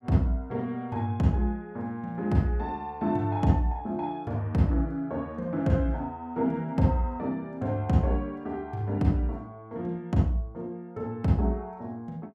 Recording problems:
none

